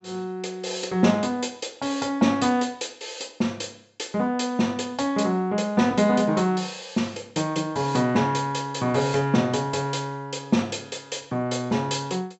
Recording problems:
treble missing; nothing above 7.9 kHz

